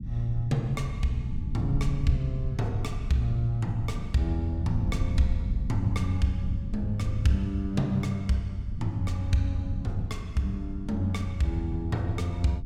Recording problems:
rumble; below 120 Hz, SNR 6 dB

